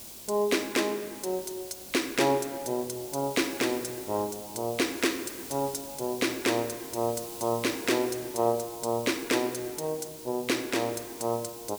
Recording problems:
background hiss; SNR 12 dB

